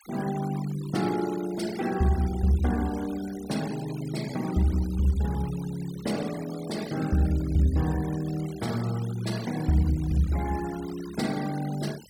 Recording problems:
noise reduction artefacts; signal-to-artefact ratio 17 dB

